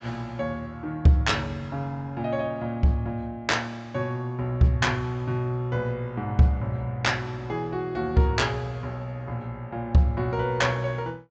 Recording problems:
low-pass filter; nothing above 8 kHz

